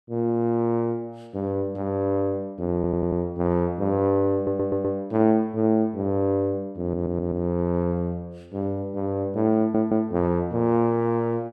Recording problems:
audio stuttering; 4 times, first at 3 s

